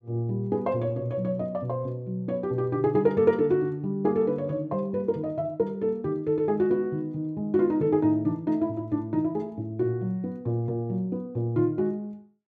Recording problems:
none

